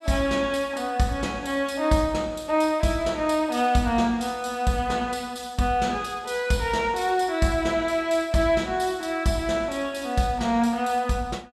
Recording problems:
none

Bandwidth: 14 kHz